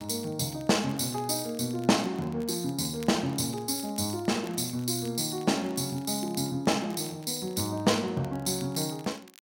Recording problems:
crackle; vinyl, SNR 24 dB

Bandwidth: 16.5 kHz